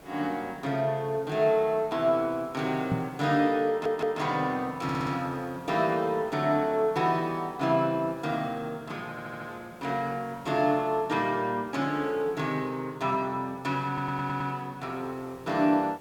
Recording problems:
hiss; slope -6 dB per octave, SNR 23 dB
microphone thump; at 3 s; peak +2 dB vs average level
audio stuttering; 4 times, first at 3.5 s

